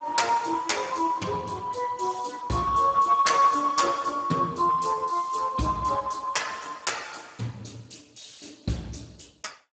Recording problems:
lossy codec; Speex, log-spectral distance 6 dB, nothing above 7.8 kHz

